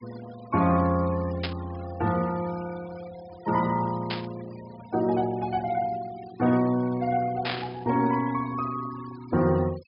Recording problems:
treble missing; nothing above 5.5 kHz
denoising artefacts; signal-to-artefact ratio 19 dB
static burst; at 1.5 s, at 4 s and at 7.5 s; peak 0 dB vs average level

